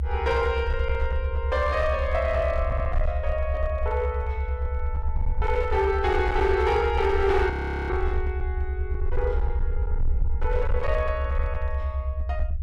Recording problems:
distortion; hard clipping, uneven, signal-to-distortion ratio 12 dB
rumble; below 74 Hz, SNR 2 dB
stutter; at 2.5 s
audio freezing; at 7.5 s

